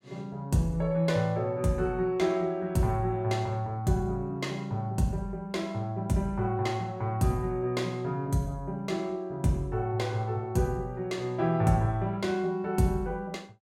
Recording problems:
none

